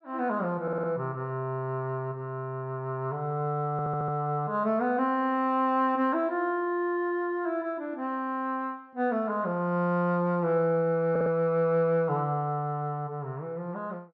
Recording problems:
audio stuttering; at 0.5 s, at 3.5 s and at 11 s

